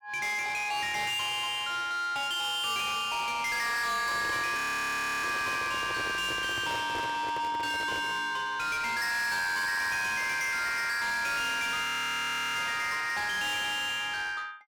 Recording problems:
distortion; soft clipping, signal-to-distortion ratio 7 dB
microphone handling noise; from 4 to 8 s; peak -3 dB vs average level
audio freezing; at 4.5 s for 0.5 s and at 12 s for 0.5 s

